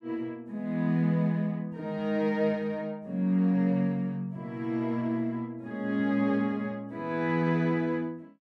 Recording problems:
none

